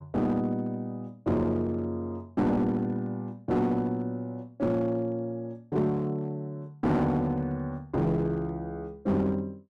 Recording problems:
distorted audio; hard clipping, uneven, signal-to-distortion ratio 10 dB

